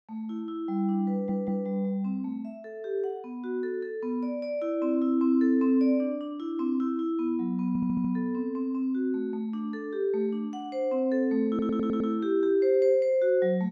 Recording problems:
audio stuttering; at 1 s, at 7.5 s and at 11 s

